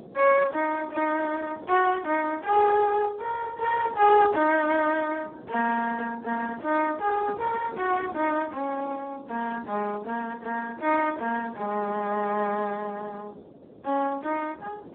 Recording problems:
phone line; 280 Hz to 2.3 kHz, Speex
wind noise; below 520 Hz, SNR 19 dB

